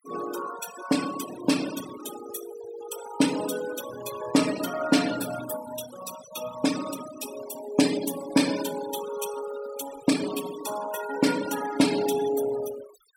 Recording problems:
noise reduction artefacts; signal-to-artefact ratio 9 dB

